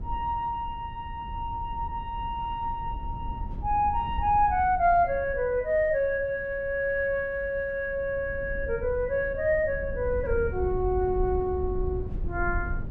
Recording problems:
wind noise; below 84 Hz, SNR 10 dB

